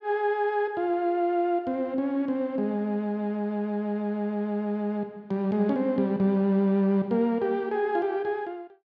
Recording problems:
none

